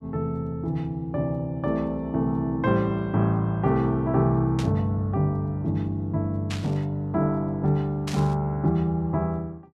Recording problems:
static burst; at 4.5 s, at 6.5 s and at 8 s; peak -5 dB vs average level

